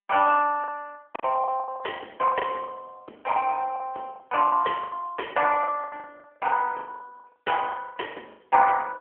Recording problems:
telephone audio; 320 Hz to 3 kHz, AMR-NB
packet loss; 16% of the sound replaced, filled with the last packet

